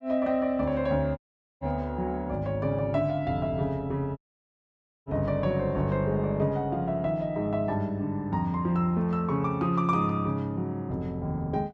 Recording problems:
audio cutting out; at 1 s and at 4 s for 1 s

